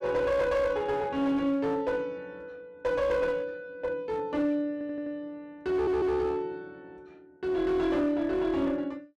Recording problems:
distorted audio; hard clipping, uneven, signal-to-distortion ratio 11 dB
stutter; at 4.5 s and at 5.5 s

